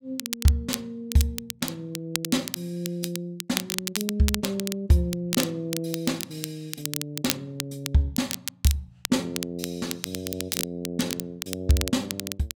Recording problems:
crackling; vinyl, SNR 4 dB

